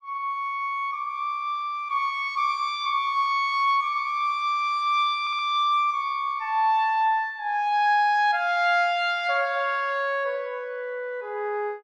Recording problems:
audio stuttering; at 5 s

